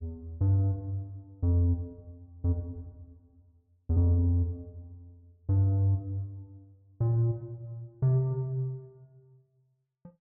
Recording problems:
none

